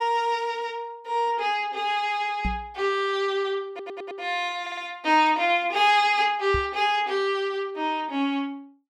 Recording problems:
microphone thump; at 2.5 s and at 6.5 s; peak -1 dB vs average level
audio stuttering; at 3.5 s and at 4.5 s

